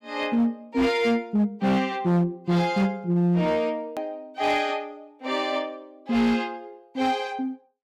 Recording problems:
distorted audio; hard clipping, signal-to-distortion ratio 12 dB
click at an edit; at 4 s

